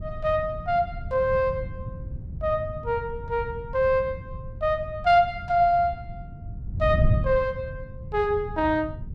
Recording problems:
wind noise; below 130 Hz, SNR 9 dB

